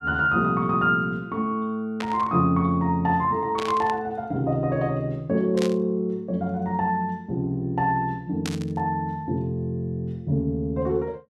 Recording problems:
static burst; 4 times, first at 2 s; peak -4 dB vs average level

